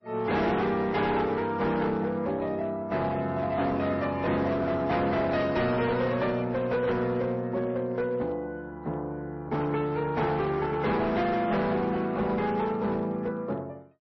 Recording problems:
lossy compression; AAC, then MP3, log-spectral distance 2 dB, nothing above 5.8 kHz
distorted audio; hard clipping, signal-to-distortion ratio 10 dB

